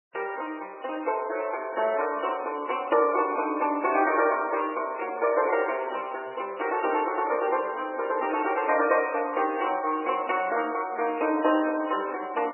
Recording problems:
lossy codec; MP3, then MP3, log-spectral distance 5 dB, nothing above 2.4 kHz

